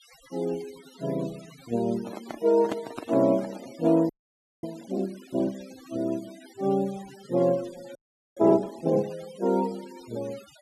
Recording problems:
denoising artefacts; signal-to-artefact ratio 21 dB
handling noise; from 2 to 4 s; peak -1 dB vs average level
frozen audio; at 4 s for 0.5 s and at 8 s

